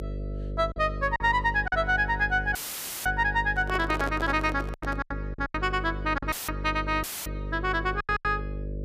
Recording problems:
electrical hum; 50 Hz, harmonics up to 600 Hz, SNR 8 dB
packet loss; 8% of the sound replaced, filled with silence
dropout; at 2.5 s for 0.5 s, at 6.5 s and at 7 s; filled with static
microphone handling noise; from 3.5 to 5 s; peak 0 dB vs average level

